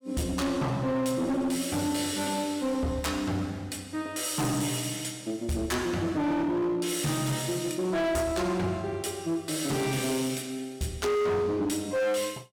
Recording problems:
distortion; hard clipping, uneven, signal-to-distortion ratio 8 dB

